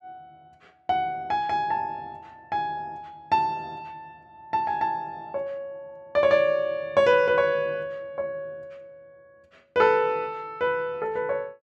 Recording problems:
none

